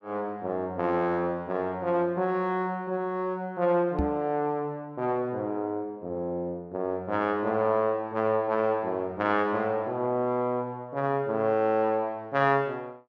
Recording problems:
microphone thump; at 4 s; peak +3 dB vs average level

